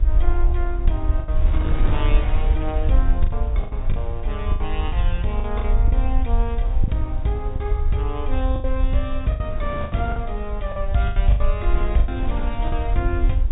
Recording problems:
low-pass filter; nothing above 4 kHz
low-frequency rumble; below 56 Hz, SNR -4 dB
wind noise; below 310 Hz, SNR 9 dB
packet loss; 9% of the sound replaced, filled with the last packet

